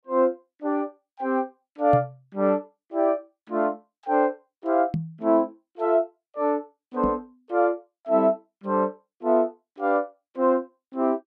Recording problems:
microphone thump; at 2 s, at 5 s and at 7 s; peak +3 dB vs average level

